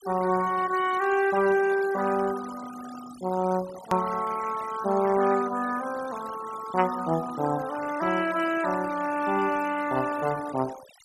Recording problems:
denoising artefacts; signal-to-artefact ratio 16 dB
edit click; at 4 s

